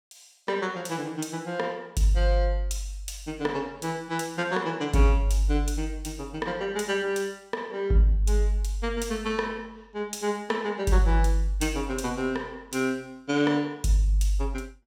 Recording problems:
none

